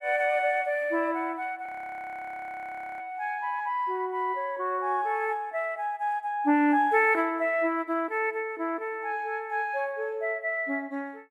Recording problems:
frozen audio; at 1.5 s for 1.5 s

